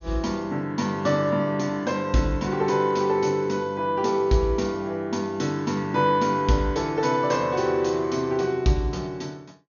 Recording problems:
treble missing; nothing above 6.8 kHz

